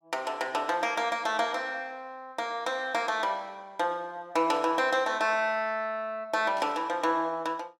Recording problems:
static burst; at 4.5 s and at 6.5 s; peak -14 dB vs average level

